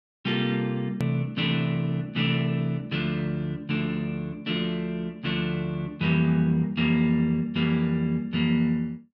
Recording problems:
click at an edit; at 1 s

